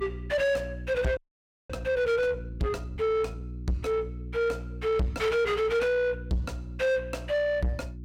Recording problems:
distorted audio; soft clipping, signal-to-distortion ratio 7 dB
mains hum; 60 Hz, harmonics up to 360 Hz, SNR 12 dB
frozen audio; at 1 s for 0.5 s

